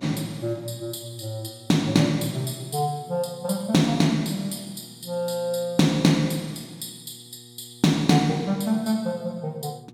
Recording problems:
hum; 60 Hz, harmonics up to 840 Hz, SNR 25 dB

